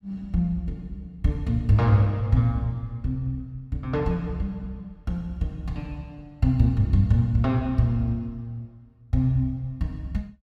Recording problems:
none

